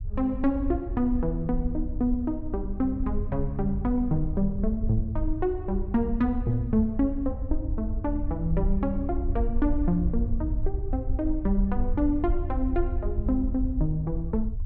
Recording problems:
low-frequency rumble; below 66 Hz, SNR 4 dB

